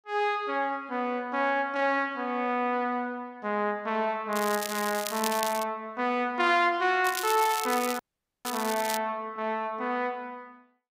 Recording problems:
crackling; from 4.5 to 5.5 s and from 7 to 9 s; loose cable, SNR 8 dB
dropout; at 8 s

